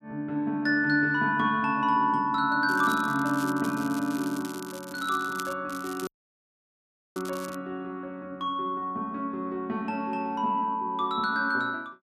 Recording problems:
crackle; from 2.5 to 5.5 s and from 5.5 to 7.5 s; loose cable, SNR 17 dB
audio cutting out; at 6 s for 1 s

